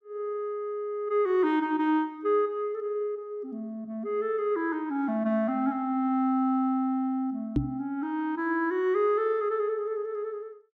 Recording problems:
microphone bump; at 7.5 s; peak +6 dB vs average level

